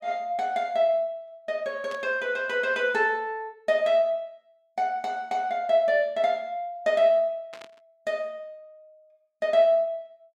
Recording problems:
static burst; at 2 s and at 7.5 s; peak -14 dB vs average level

